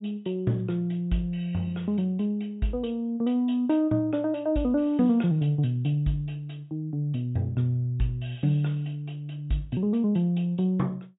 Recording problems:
low-pass filter; nothing above 4 kHz

